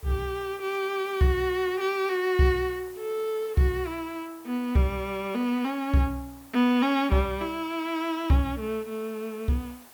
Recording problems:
background hiss; SNR 23 dB

